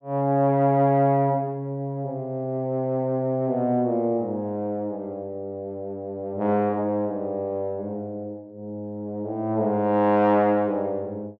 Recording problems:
none

